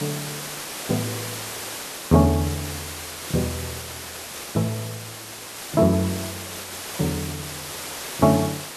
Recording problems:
background hiss; slope -2 dB per octave, SNR 8 dB

